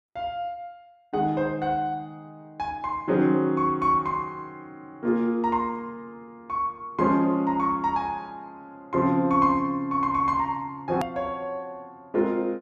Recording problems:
edit click; at 11 s

